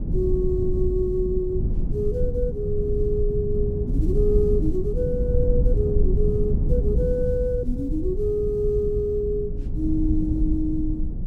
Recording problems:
low-frequency rumble; below 92 Hz, SNR 0 dB

